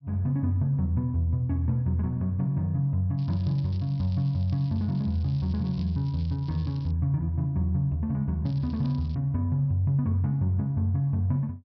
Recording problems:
treble cut off; nothing above 5.5 kHz
crackling; from 3 to 7 s and at 8.5 s; loose cable, SNR 27 dB

